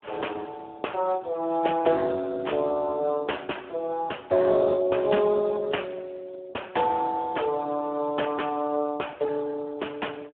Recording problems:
phone line; 300 Hz to 3.2 kHz, Speex

